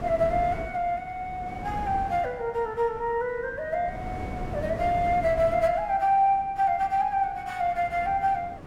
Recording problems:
wind on the microphone; below 410 Hz, SNR 13 dB

